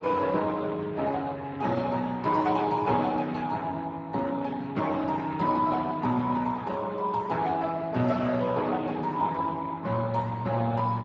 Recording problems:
lossy codec; Speex, log-spectral distance 3 dB, nothing above 7.3 kHz

